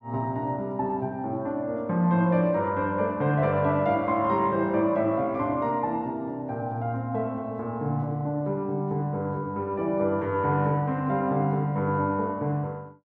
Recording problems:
none

